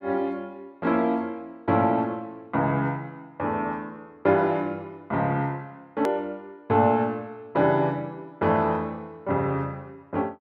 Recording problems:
edit click; at 6 s

